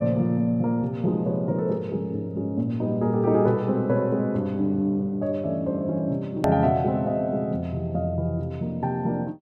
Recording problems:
hard cut with a click; at 6.5 s

